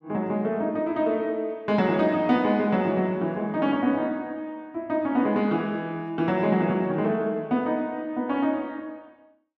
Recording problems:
none

